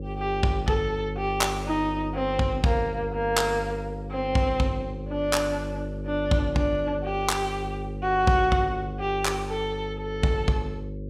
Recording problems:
hum; 50 Hz, harmonics up to 550 Hz, SNR 8 dB

